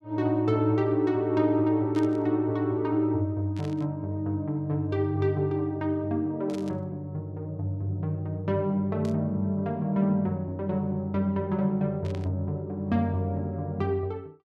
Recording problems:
burst of static; 5 times, first at 2 s; peak -13 dB vs average level

